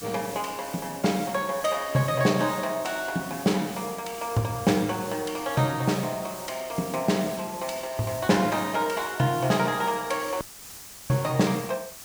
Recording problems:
background hiss; slope 0 dB per octave, SNR 13 dB
dropout; at 10 s for 0.5 s

